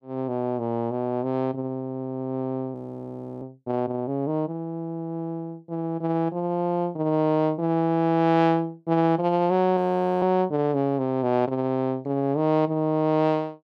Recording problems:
audio freezing; at 2.5 s for 0.5 s and at 10 s

